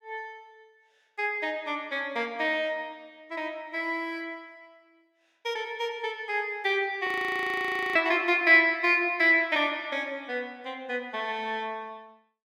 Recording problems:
frozen audio; at 7 s for 1 s

